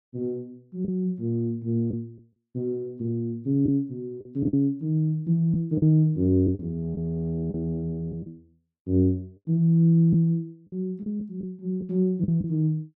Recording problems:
lost packets; 5% of the sound replaced, filled with the last packet

